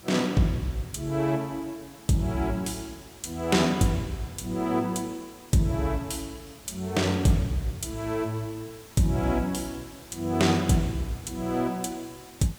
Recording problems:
hiss; slope -2 dB per octave, SNR 21 dB

